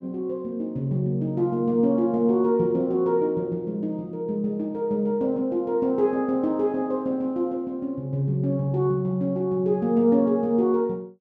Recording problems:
none

